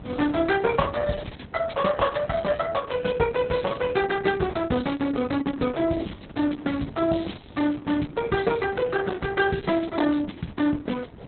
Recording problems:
lossy compression; Opus, log-spectral distance 5 dB, nothing above 4 kHz
wind on the microphone; below 410 Hz, SNR 18 dB

